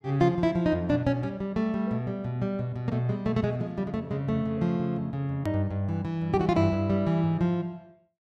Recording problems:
edit click; at 5.5 s

